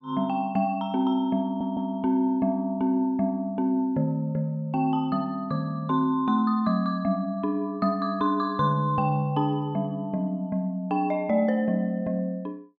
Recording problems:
stutter; at 1.5 s

